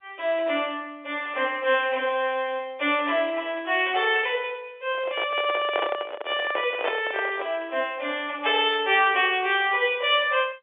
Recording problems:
phone line; 320 Hz to 3.5 kHz, G.711
microphone handling noise; from 5 to 7.5 s; peak +1 dB vs average level

